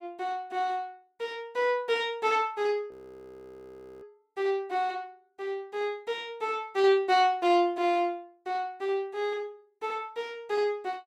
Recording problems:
audio freezing; at 3 s for 1 s

